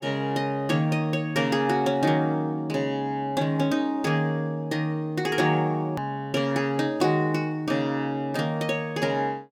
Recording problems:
click at an edit; at 6 s

